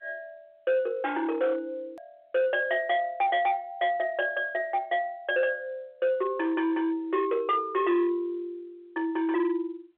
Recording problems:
telephone audio; 300 Hz to 3.8 kHz, G.711
distorted audio; hard clipping, signal-to-distortion ratio 11 dB
click at an edit; at 2 s

